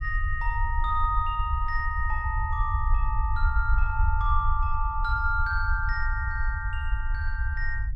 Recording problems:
rumble; below 68 Hz, SNR 0 dB

